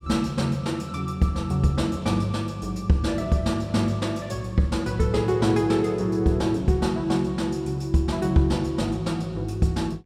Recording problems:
none

